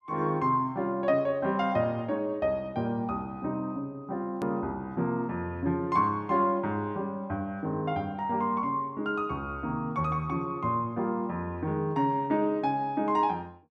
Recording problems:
click at an edit; at 4.5 s

